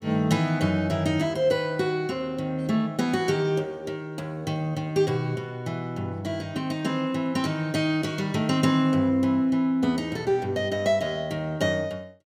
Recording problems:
none

